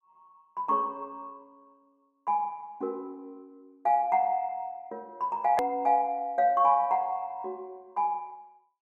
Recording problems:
click at an edit; at 5.5 s

